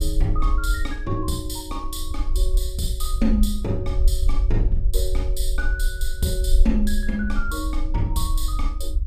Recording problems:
rumble; below 48 Hz, SNR -2 dB

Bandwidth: 15 kHz